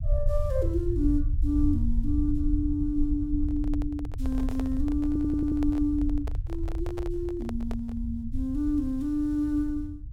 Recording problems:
rumble; below 76 Hz, SNR 3 dB
microphone handling noise; from 3.5 to 8 s; peak -6 dB vs average level
audio stuttering; at 5 s

